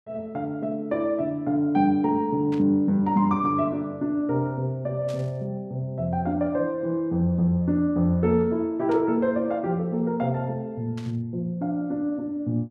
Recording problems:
burst of static; 4 times, first at 2.5 s; peak -14 dB vs average level

